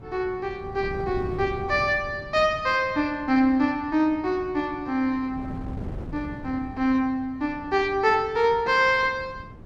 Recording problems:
wind noise; below 260 Hz, SNR 15 dB

